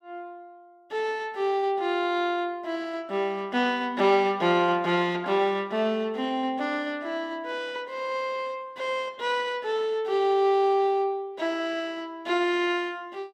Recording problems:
none

